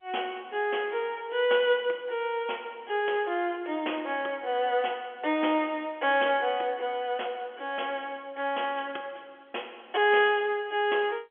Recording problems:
phone line; 280 Hz to 3.4 kHz, G.711

